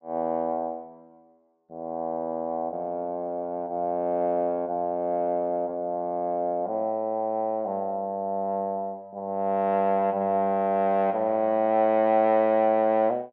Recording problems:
treble missing; nothing above 7.8 kHz

